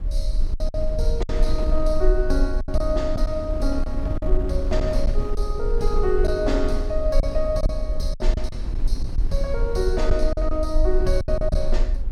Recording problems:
low-frequency rumble; below 40 Hz, strongest tone 22 Hz, SNR 0 dB
wind noise; below 150 Hz, SNR 8 dB
packet loss; 7% of the sound replaced, filled with silence

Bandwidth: 16.5 kHz